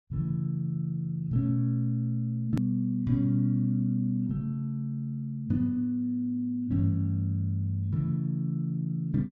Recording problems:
click at an edit; at 2.5 s

